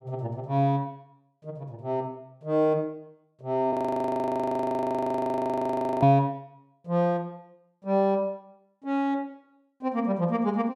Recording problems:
frozen audio; at 3.5 s for 2.5 s

